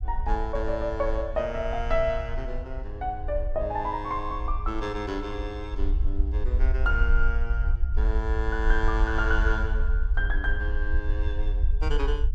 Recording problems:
low-frequency rumble; below 56 Hz, SNR -1 dB

